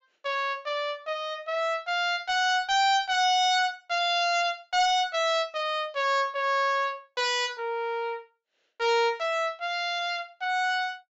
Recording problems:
low-pass filter; nothing above 7.4 kHz
distortion; hard clipping, signal-to-distortion ratio 10 dB

